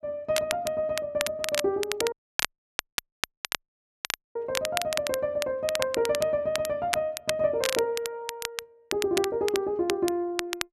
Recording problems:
crackle; vinyl, SNR 5 dB
dropout; at 2 s for 2 s

